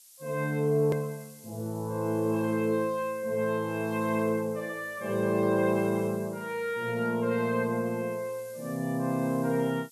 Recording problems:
hiss; SNR 22 dB
hard cut with a click; at 1 s

